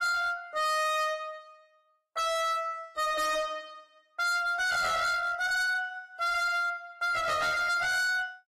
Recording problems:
lossy compression; AAC, log-spectral distance 2 dB, nothing above 14.3 kHz
distortion; hard clipping, signal-to-distortion ratio 7 dB

